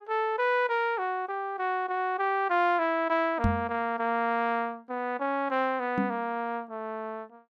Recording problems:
microphone thump; at 3.5 s and at 6 s; peak +5 dB vs average level

